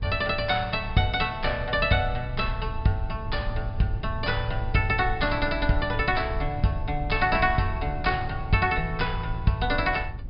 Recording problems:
treble cut off; nothing above 5.5 kHz
rumble; below 76 Hz, SNR 9 dB

